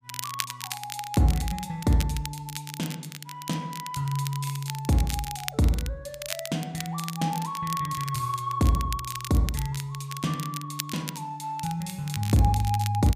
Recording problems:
crackle; vinyl, SNR 10 dB

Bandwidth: 15 kHz